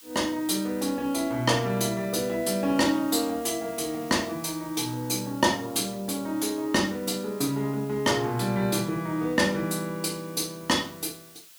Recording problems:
hiss; slope +3 dB per octave, SNR 20 dB

